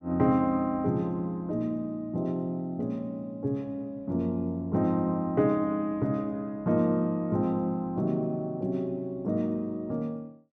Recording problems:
none

